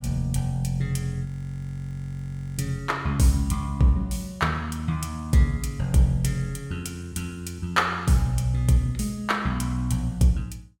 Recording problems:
frozen audio; at 1.5 s for 1.5 s

